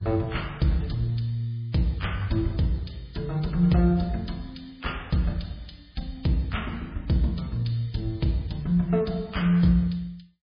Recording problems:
codec artefacts; MP3, log-spectral distance 4 dB, nothing above 11.3 kHz

